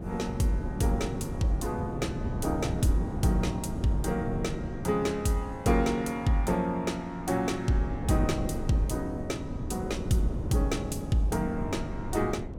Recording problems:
wind on the microphone; below 280 Hz, SNR 6 dB

